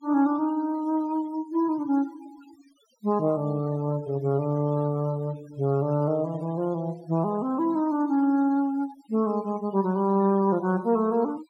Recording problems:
denoising artefacts; signal-to-artefact ratio 24 dB

